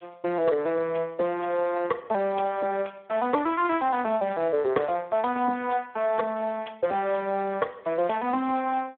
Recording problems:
phone line; 280 Hz to 3.9 kHz, Speex

